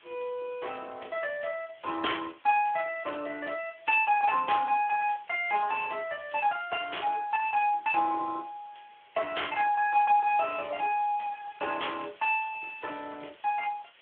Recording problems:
telephone audio; 300 Hz to 3.4 kHz, Speex
hiss; SNR 27 dB

